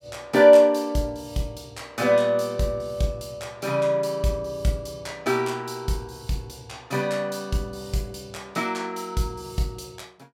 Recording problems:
none

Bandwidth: 16.5 kHz